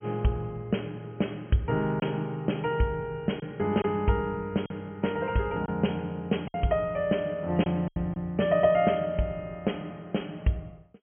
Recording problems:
treble cut off; nothing above 3.2 kHz
lossy compression; G.722, log-spectral distance 2 dB
packet loss; 3% of the sound replaced, filled with silence

